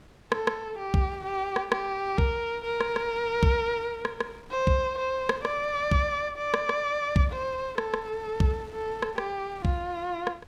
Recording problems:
wind on the microphone; below 1.1 kHz, SNR 23 dB

